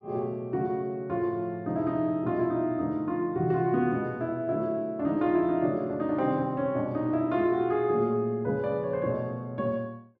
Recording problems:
none

